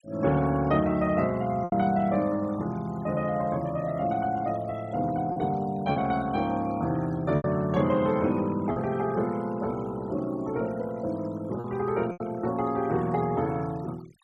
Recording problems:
denoising artefacts; signal-to-artefact ratio 21 dB
lost packets; 3% of the sound replaced, filled with repeated pitch periods

